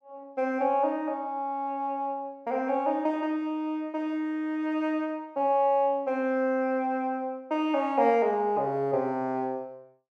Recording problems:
none

